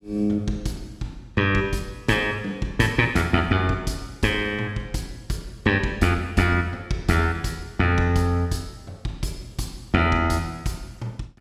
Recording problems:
none

